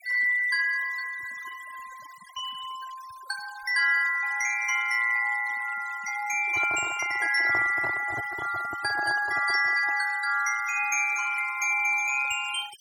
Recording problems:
noise reduction artefacts; signal-to-artefact ratio 17 dB
microphone handling noise; from 6.5 to 10 s; peak -6 dB vs average level

